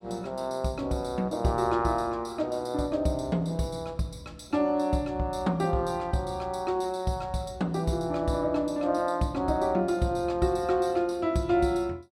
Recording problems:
none

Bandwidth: 16 kHz